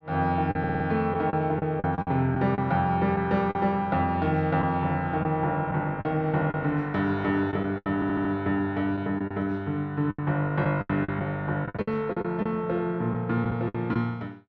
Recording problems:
lost packets; 9% of the sound replaced, filled with the last packet
audio stuttering; at 0.5 s and at 8 s

